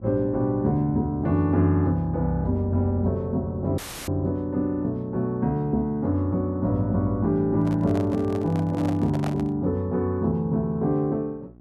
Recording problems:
electrical hum; 60 Hz, harmonics up to 780 Hz, SNR 26 dB
audio cutting out; at 4 s; filled with static
microphone handling noise; from 7.5 to 9.5 s; peak -5 dB vs average level

